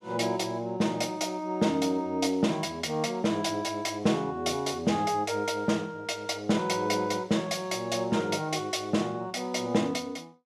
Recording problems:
none

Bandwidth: 13.5 kHz